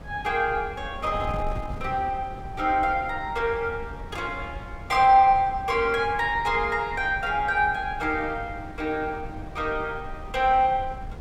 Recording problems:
wind noise; below 170 Hz, SNR 15 dB

